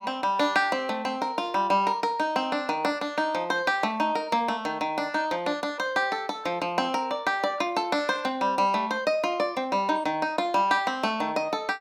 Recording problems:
none

